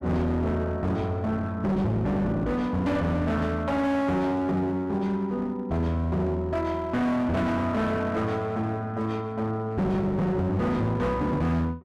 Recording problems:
distorted audio; hard clipping, uneven, signal-to-distortion ratio 7 dB

